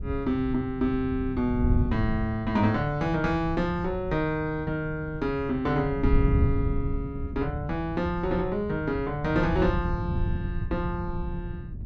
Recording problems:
wind on the microphone; below 120 Hz, SNR 4 dB

